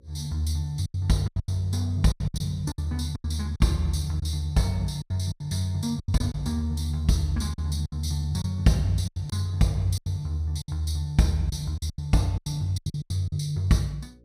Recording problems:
hum; 60 Hz, harmonics up to 540 Hz, SNR 31 dB
packet loss; 12% of the sound replaced, filled with silence

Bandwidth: 15.5 kHz